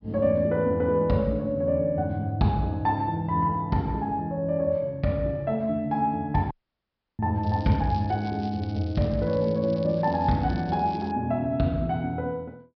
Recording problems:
treble cut off; nothing above 5.5 kHz
dropout; at 6.5 s for 0.5 s
crackling; from 7.5 to 11 s; loose cable, SNR 24 dB

